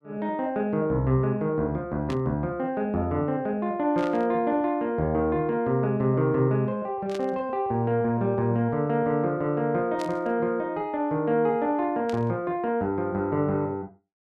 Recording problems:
burst of static; 5 times, first at 2 s; peak -10 dB vs average level

